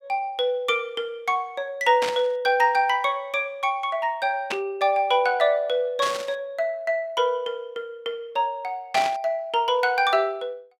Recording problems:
burst of static; 4 times, first at 2 s; peak 0 dB vs average level

